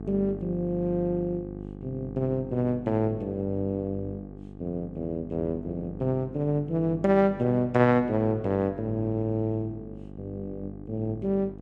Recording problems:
electrical hum; 50 Hz, harmonics up to 850 Hz, SNR 13 dB

